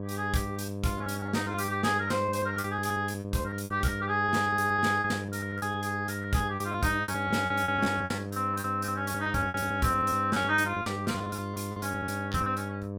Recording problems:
hum; 50 Hz, harmonics up to 1.1 kHz, SNR 6 dB
lost packets; 17% of the sound replaced, filled with repeated pitch periods

